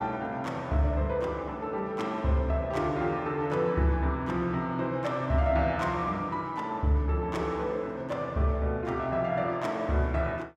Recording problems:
none

